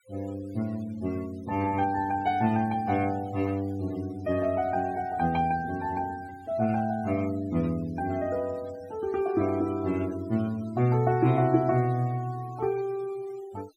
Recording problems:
noise reduction artefacts; signal-to-artefact ratio 21 dB

